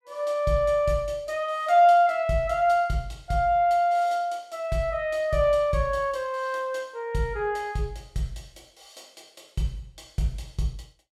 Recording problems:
none

